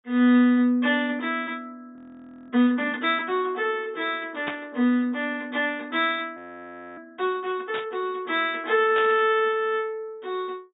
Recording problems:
treble missing; nothing above 4 kHz
audio freezing; at 2 s for 0.5 s and at 6.5 s for 0.5 s
burst of static; at 4.5 s, at 7.5 s and at 9 s; peak -4 dB vs average level

